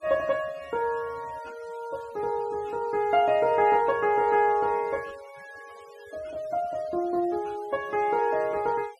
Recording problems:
denoising artefacts; signal-to-artefact ratio 25 dB

